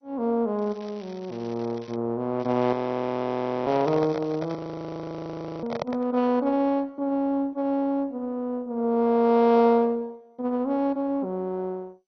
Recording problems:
lossy codec; MP2, log-spectral distance 3 dB, nothing above 6 kHz
crackle; from 0.5 to 2 s and from 2.5 to 4.5 s; loose cable, SNR 27 dB
audio freezing; at 2.5 s for 1 s and at 4.5 s for 1 s
microphone handling noise; from 3.5 to 6 s; peak 0 dB vs average level

